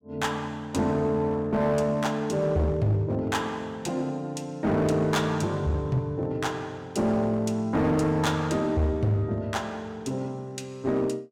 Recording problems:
distortion; hard clipping, uneven, signal-to-distortion ratio 11 dB

